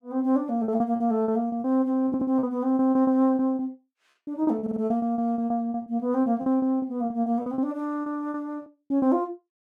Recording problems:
packet loss; 17% of the sound replaced, filled with repeated pitch periods
stutter; at 2 s and at 4.5 s

